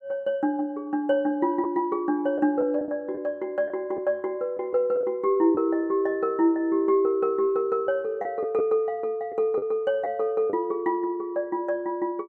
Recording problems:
packet loss; 3% of the sound replaced, filled with the last packet

